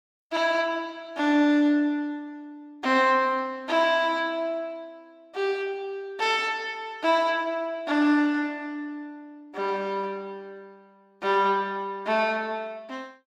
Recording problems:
none

